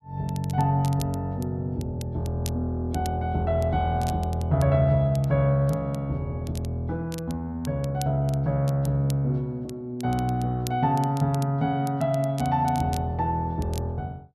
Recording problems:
crackle; vinyl, SNR 20 dB

